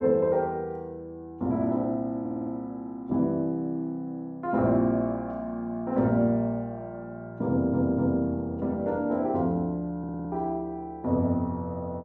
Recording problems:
audio stuttering; at 2 s, at 7.5 s and at 10 s

